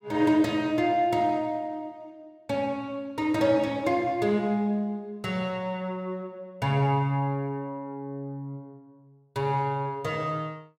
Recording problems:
none

